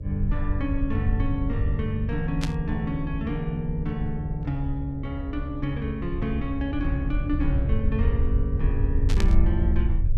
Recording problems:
hum; 60 Hz, harmonics up to 600 Hz, SNR 22 dB
low-frequency rumble; below 76 Hz, SNR 0 dB
burst of static; at 2.5 s and at 9 s; peak +1 dB vs average level

